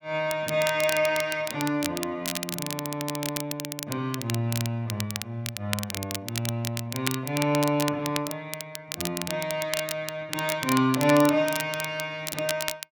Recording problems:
crackle; vinyl, SNR 6 dB

